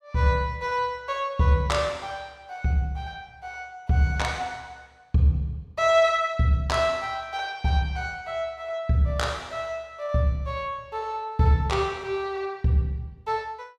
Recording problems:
none

